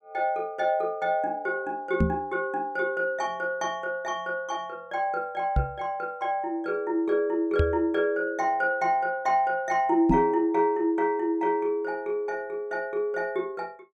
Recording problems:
knock on the microphone; 4 times, first at 2 s; peak +7 dB vs average level

